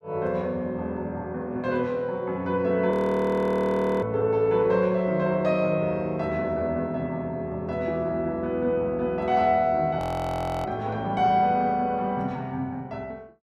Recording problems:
audio freezing; at 3 s for 1 s and at 10 s for 0.5 s

